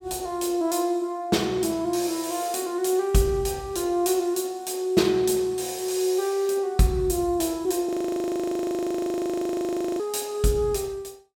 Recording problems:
frozen audio; at 8 s for 2 s

